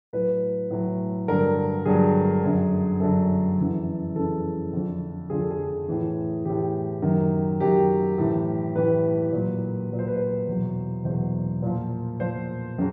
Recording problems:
none

